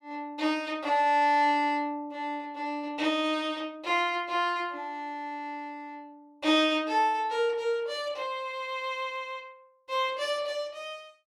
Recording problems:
none

